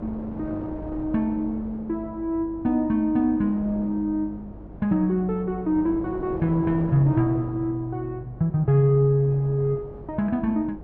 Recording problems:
electrical hum; 50 Hz, harmonics up to 400 Hz, SNR 22 dB
wind on the microphone; below 520 Hz, SNR 16 dB

